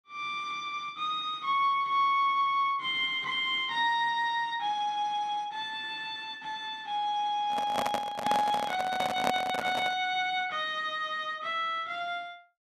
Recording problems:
handling noise; from 7.5 to 10 s; peak +3 dB vs average level

